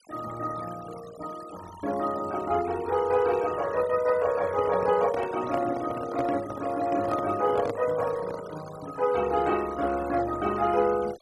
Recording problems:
denoising artefacts; signal-to-artefact ratio 16 dB
microphone handling noise; from 4.5 to 8.5 s; peak -3 dB vs average level

